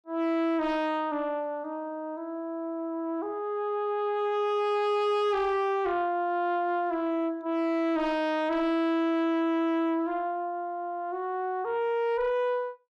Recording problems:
distorted audio; soft clipping, signal-to-distortion ratio 10 dB

